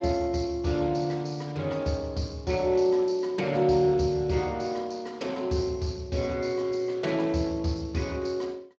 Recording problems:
codec artefacts; Speex, log-spectral distance 4 dB

